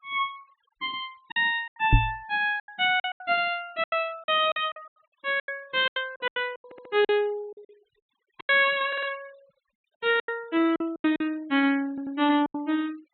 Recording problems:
treble cut off; nothing above 4.1 kHz
noise reduction artefacts; signal-to-artefact ratio 26 dB
packet loss; 14% of the sound replaced, filled with silence
microphone thump; at 2 s; peak +9 dB vs average level
audio stuttering; at 6.5 s, at 9 s and at 12 s

